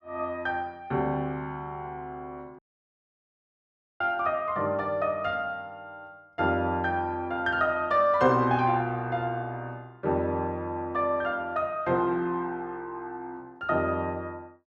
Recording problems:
dropout; at 2.5 s for 1.5 s

